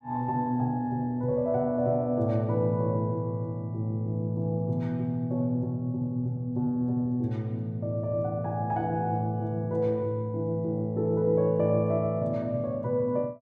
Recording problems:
none

